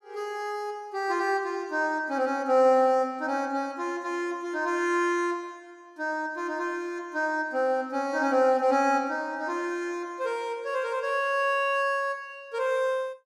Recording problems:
none

